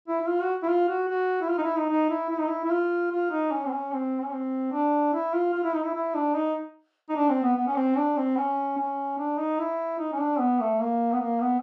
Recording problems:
none

